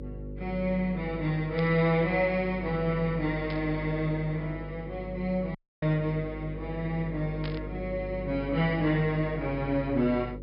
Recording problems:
low-pass filter; nothing above 5.5 kHz
hum; 50 Hz, harmonics up to 550 Hz, SNR 11 dB
static burst; at 1.5 s, at 3.5 s and at 7.5 s; peak -7 dB vs average level
dropout; at 5.5 s

